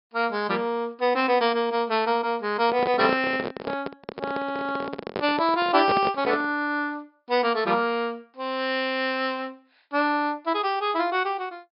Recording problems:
treble missing; nothing above 5.5 kHz
handling noise; from 2.5 to 6.5 s; peak +2 dB vs average level

